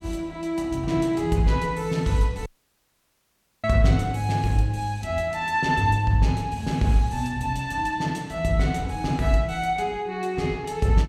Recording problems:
dropout; at 2.5 s for 1 s

